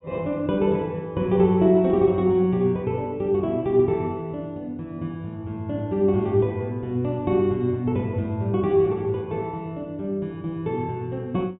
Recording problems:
treble missing; nothing above 4 kHz

